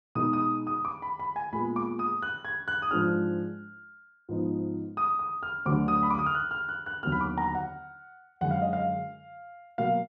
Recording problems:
none

